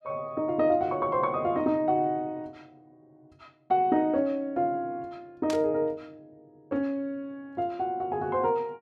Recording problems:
burst of static; at 5.5 s; peak -5 dB vs average level

